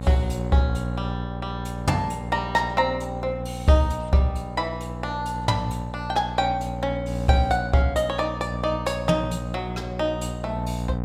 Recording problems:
hum; 60 Hz, harmonics up to 1 kHz, SNR 7 dB

